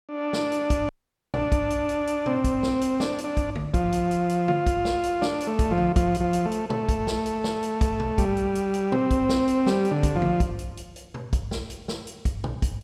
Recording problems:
dropout; at 1 s

